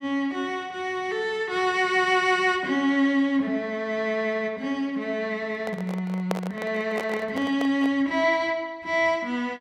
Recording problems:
handling noise; from 5.5 to 8 s; peak +1 dB vs average level

